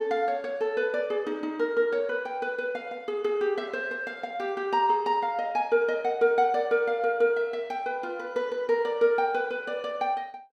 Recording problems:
none

